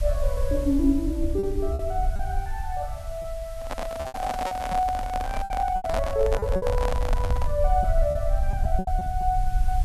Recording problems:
background hiss; SNR 21 dB
rumble; below 60 Hz, SNR 2 dB
packet loss; 8% of the sound replaced, filled with repeated pitch periods
handling noise; from 3.5 to 7.5 s; peak +2 dB vs average level

